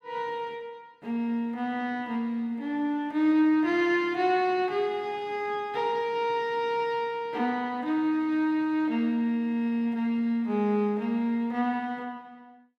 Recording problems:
none

